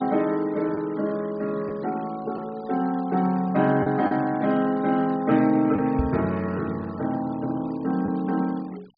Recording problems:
treble missing; nothing above 4.8 kHz
denoising artefacts; signal-to-artefact ratio 23 dB
packet loss; 1.7% of the sound replaced, filled with the last packet
microphone thump; at 6 s; peak +2 dB vs average level

